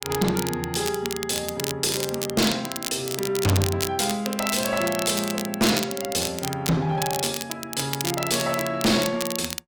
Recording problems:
distorted audio; hard clipping, uneven, signal-to-distortion ratio 7 dB
crackling; vinyl, SNR 6 dB

